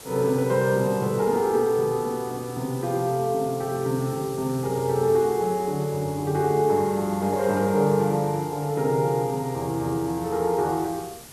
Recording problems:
hiss; slope -2 dB per octave, SNR 18 dB

